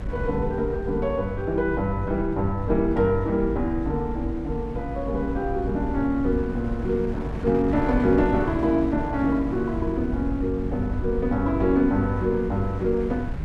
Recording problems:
rumble; below 86 Hz, SNR 9 dB
wind on the microphone; below 390 Hz, SNR 14 dB

